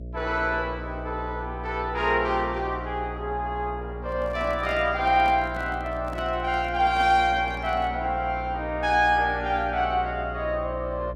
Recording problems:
electrical hum; 60 Hz, harmonics up to 660 Hz, SNR 12 dB
handling noise; from 4 to 8 s; peak -9 dB vs average level

